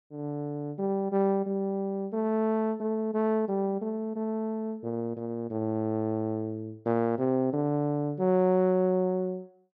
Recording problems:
none

